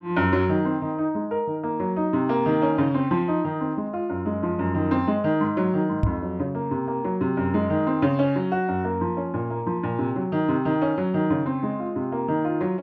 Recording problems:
knock on the microphone; at 6 s; peak +5 dB vs average level

